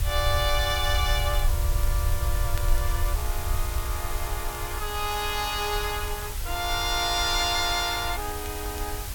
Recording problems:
hiss; slope -1 dB per octave, SNR 7 dB
rumble; below 72 Hz, SNR 3 dB
crackling; vinyl, SNR 25 dB

